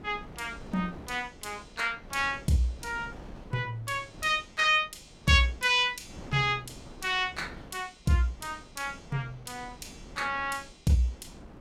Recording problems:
wind noise; below 480 Hz, SNR 20 dB

